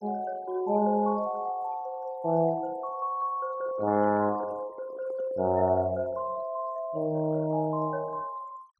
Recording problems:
denoising artefacts; signal-to-artefact ratio 24 dB
microphone handling noise; from 3.5 to 5.5 s; peak -12 dB vs average level

